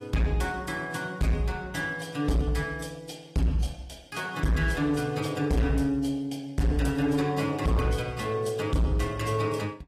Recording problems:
codec artefacts; AAC, log-spectral distance 3 dB
distortion; hard clipping, signal-to-distortion ratio 7 dB

